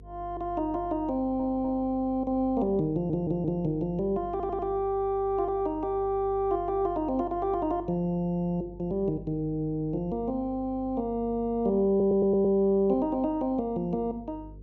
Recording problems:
electrical hum; 50 Hz, harmonics up to 500 Hz, SNR 19 dB
audio stuttering; 4 times, first at 1 s

